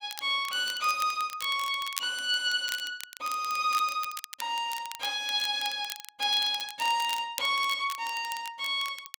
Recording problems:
crackling; vinyl, SNR 13 dB

